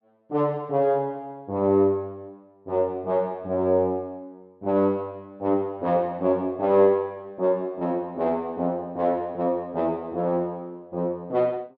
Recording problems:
none

